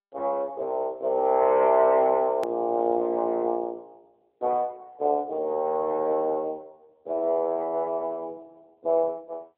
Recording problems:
telephone audio; 260 Hz to 2.6 kHz, AMR-NB
hard cut with a click; at 2.5 s

